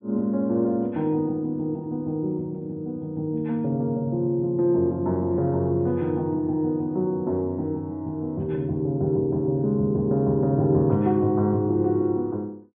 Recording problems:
treble cut off; nothing above 3.4 kHz

